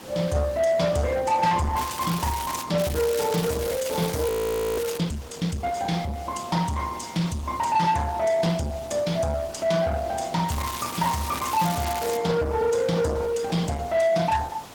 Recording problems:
codec artefacts; Opus, log-spectral distance 5 dB, nothing above 18.3 kHz
distortion; soft clipping, signal-to-distortion ratio 10 dB
hiss; slope -4 dB per octave, SNR 18 dB
crackle; at 2 s, from 3 to 5 s and from 10 to 12 s; loose cable, SNR 9 dB
audio freezing; at 4.5 s

